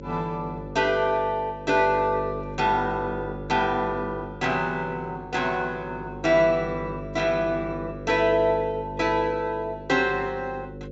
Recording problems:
treble missing; nothing above 7.4 kHz
hum; 50 Hz, harmonics up to 550 Hz, SNR 12 dB

